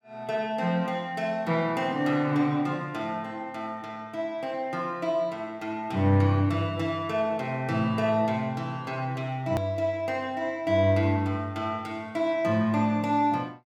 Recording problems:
hard cut with a click; at 9.5 s

